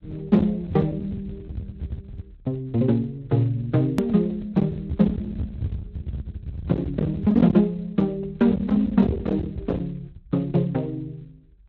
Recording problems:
lossy compression; Speex, log-spectral distance 2 dB, nothing above 13.1 kHz
distortion; hard clipping, signal-to-distortion ratio 11 dB
rumble; below 300 Hz, SNR 9 dB
click at an edit; at 4 s

